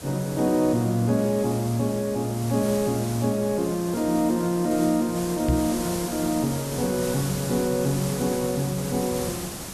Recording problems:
hiss; SNR 10 dB
knock on the microphone; at 5.5 s; peak +3 dB vs average level

